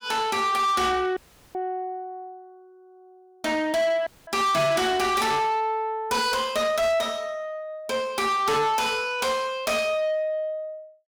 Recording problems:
distortion; soft clipping, signal-to-distortion ratio 7 dB
audio cutting out; at 1 s and at 4 s

